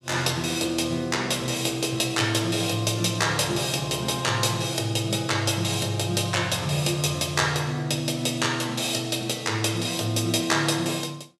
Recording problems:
none

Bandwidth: 15 kHz